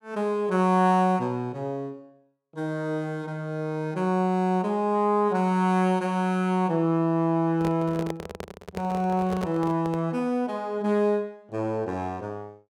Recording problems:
handling noise; from 7.5 to 10 s; peak -4 dB vs average level

